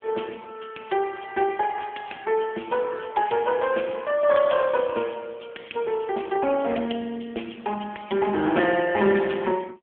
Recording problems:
telephone audio; 220 Hz to 3.4 kHz, AMR-NB

